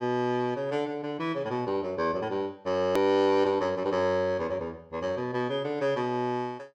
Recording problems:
hard cut with a click; at 3 s

